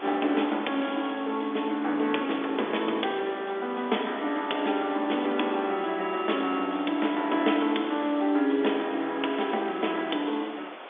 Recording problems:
phone line; 220 Hz to 3.6 kHz, G.711
hiss; SNR 14 dB

